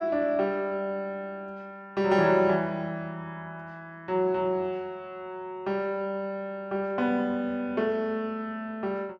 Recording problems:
none

